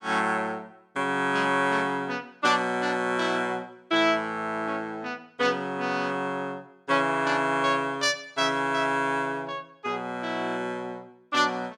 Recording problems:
none

